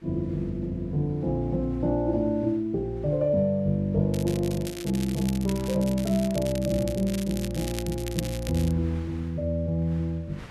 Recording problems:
wind noise; below 1.6 kHz, SNR 25 dB
crackling; from 4 to 8.5 s; loose cable, SNR 13 dB

